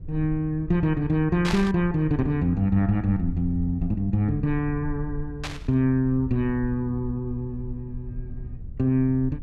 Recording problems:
low-frequency rumble; below 76 Hz, SNR 14 dB
burst of static; at 1.5 s and at 5.5 s; peak -2 dB vs average level

